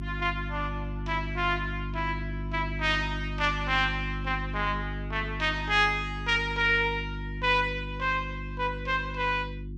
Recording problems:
mains hum; 50 Hz, harmonics up to 350 Hz, SNR 7 dB

